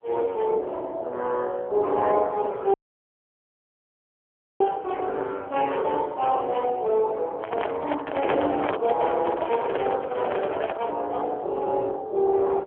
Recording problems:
phone line; 320 Hz to 3.3 kHz, AMR-NB
audio cutting out; at 2.5 s for 2 s
handling noise; from 7.5 to 11 s; peak +3 dB vs average level

